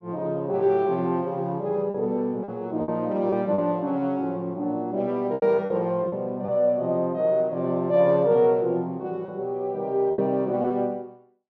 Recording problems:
packet loss; 5% of the sound replaced, filled with repeated pitch periods

